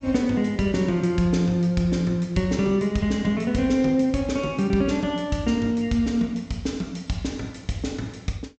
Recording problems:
low-pass filter; nothing above 8 kHz

